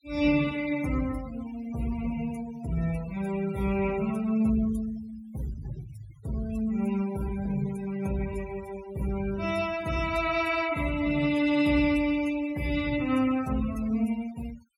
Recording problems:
noise reduction artefacts; signal-to-artefact ratio 17 dB

